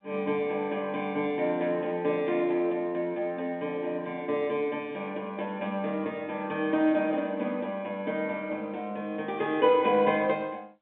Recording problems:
telephone audio; 220 Hz to 3.5 kHz, G.711

